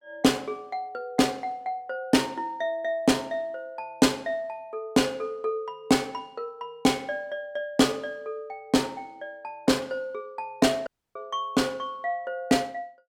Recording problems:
audio cutting out; at 11 s

